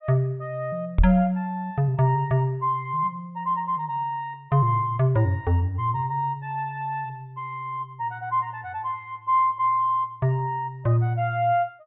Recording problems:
treble missing; nothing above 4 kHz
microphone bump; at 1 s; peak +7 dB vs average level

